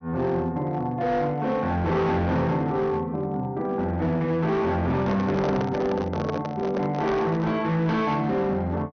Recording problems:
low-pass filter; nothing above 6.4 kHz
distortion; hard clipping, signal-to-distortion ratio 11 dB
handling noise; from 5 to 7.5 s; peak +1 dB vs average level

